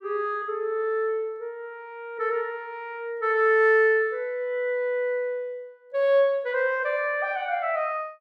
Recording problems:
none

